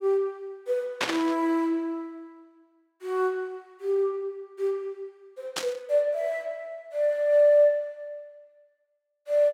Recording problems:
burst of static; at 1 s and at 5.5 s; peak +4 dB vs average level

